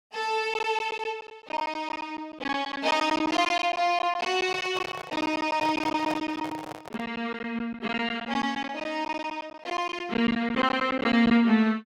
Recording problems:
packet loss; 12% of the sound replaced, filled with silence
handling noise; from 4.5 to 7 s; peak -3 dB vs average level

